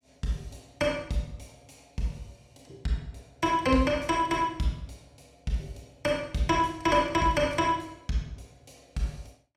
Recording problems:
none

